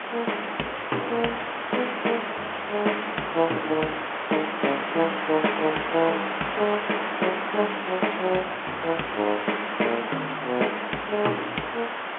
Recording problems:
telephone audio; 260 Hz to 3.3 kHz, G.711
background hiss; SNR 3 dB
wind noise; below 1.5 kHz, SNR 23 dB

